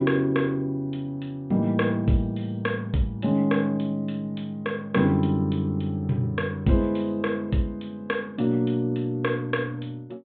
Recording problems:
treble cut off; nothing above 4 kHz

